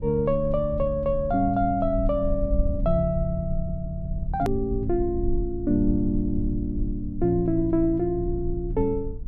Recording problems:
low-frequency rumble; below 62 Hz, SNR 8 dB
hard cut with a click; at 4.5 s

